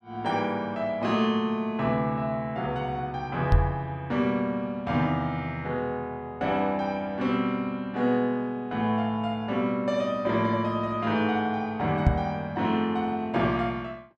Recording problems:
knock on the microphone; at 3.5 s and at 12 s; peak +9 dB vs average level

